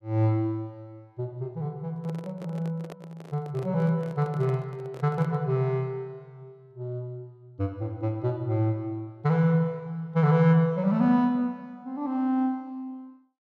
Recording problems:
microphone handling noise; from 2 to 5.5 s; peak -11 dB vs average level

